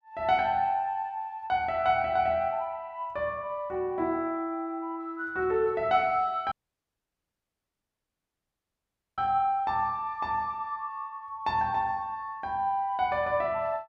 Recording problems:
audio cutting out; at 6.5 s for 2.5 s

